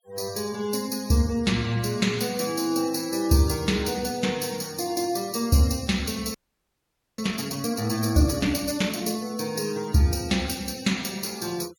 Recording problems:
noise reduction artefacts; signal-to-artefact ratio 19 dB
frozen audio; at 6.5 s for 1 s

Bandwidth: 18 kHz